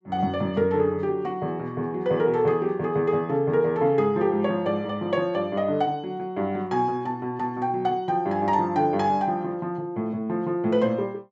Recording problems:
none

